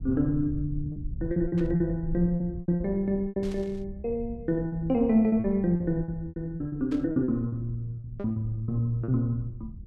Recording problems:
low-frequency rumble; below 110 Hz, SNR 13 dB
lost packets; 12% of the sound replaced, filled with repeated pitch periods
burst of static; at 1.5 s, at 3.5 s and at 7 s; peak -15 dB vs average level

